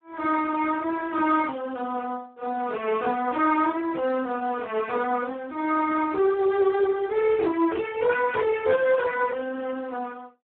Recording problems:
telephone audio; 280 Hz to 2.8 kHz, Speex

